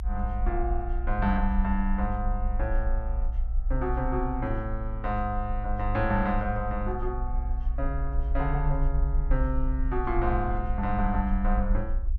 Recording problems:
low-frequency rumble; below 56 Hz, strongest tone 32 Hz, SNR 1 dB

